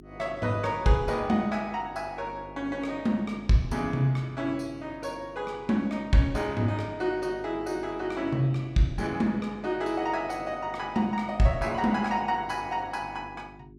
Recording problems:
hum; 50 Hz, harmonics up to 400 Hz, SNR 20 dB

